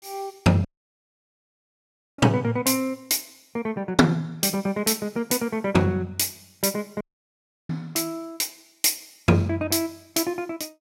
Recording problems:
dropout; at 0.5 s for 1.5 s and at 7 s for 0.5 s

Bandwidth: 16 kHz